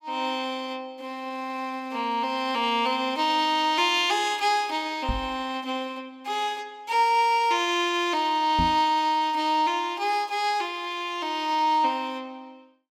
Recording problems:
knock on the microphone; at 5 s and at 8.5 s; peak 0 dB vs average level

